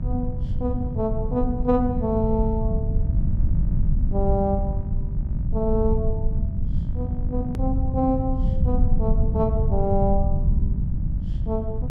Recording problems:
electrical hum; 50 Hz, harmonics up to 1.3 kHz, SNR 18 dB
low-frequency rumble; below 100 Hz, SNR -1 dB
click at an edit; at 7.5 s

